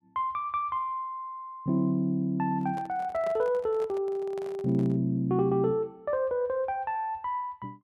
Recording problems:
microphone handling noise; from 2.5 to 5 s; peak -9 dB vs average level

